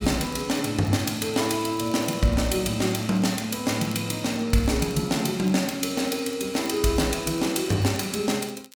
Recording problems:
crackle; vinyl, SNR 23 dB

